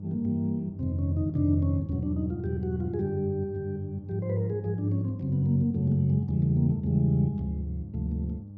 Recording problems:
electrical hum; 50 Hz, harmonics up to 500 Hz, SNR 14 dB

